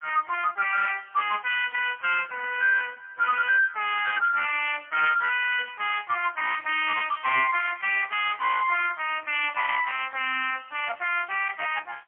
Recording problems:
phone line; 540 Hz to 2.8 kHz, AMR-NB, then MP3
distortion; hard clipping, signal-to-distortion ratio 10 dB

